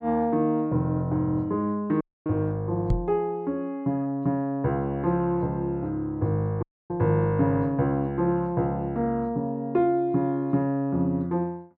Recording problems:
audio cutting out; at 2 s and at 6.5 s
microphone bump; at 3 s; peak +4 dB vs average level

